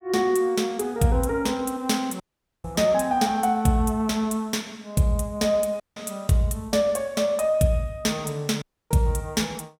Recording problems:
dropout; at 2 s, at 6 s and at 8.5 s

